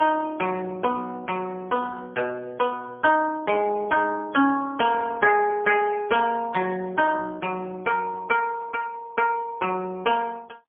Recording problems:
phone line; 220 Hz to 3 kHz, AMR-NB, then MP3

